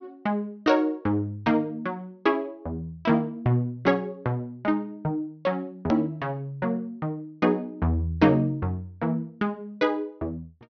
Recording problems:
treble missing; nothing above 6.2 kHz
click at an edit; at 6 s

